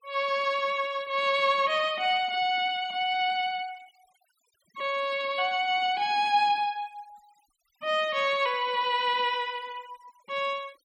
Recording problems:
denoising artefacts; signal-to-artefact ratio 24 dB

